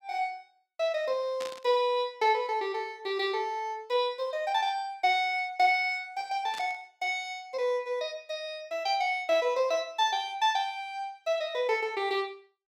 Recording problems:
static burst; at 1.5 s and at 6.5 s; peak -7 dB vs average level

